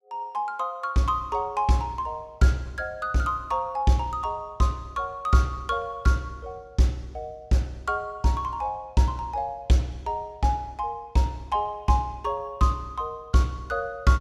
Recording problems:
none

